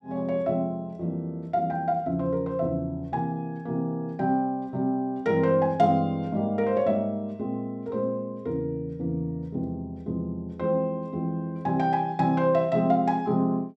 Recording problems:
none

